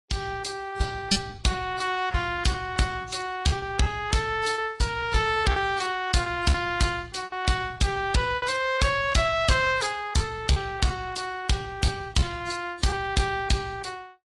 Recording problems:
codec artefacts; MP3, then AAC, log-spectral distance 4 dB, nothing above 10.4 kHz
distortion; hard clipping, uneven, signal-to-distortion ratio 12 dB
lost packets; 10% of the sound replaced, filled with repeated pitch periods

